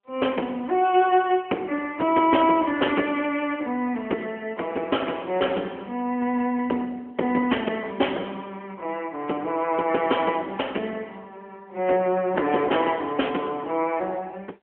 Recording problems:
phone line; 260 Hz to 3.3 kHz, AMR-NB

